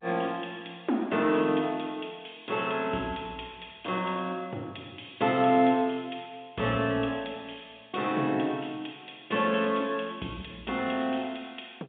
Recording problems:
telephone audio; 190 Hz to 3.7 kHz, G.711

